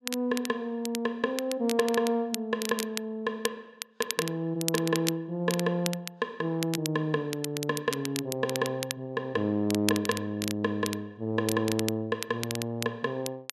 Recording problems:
crackle; vinyl, SNR 7 dB

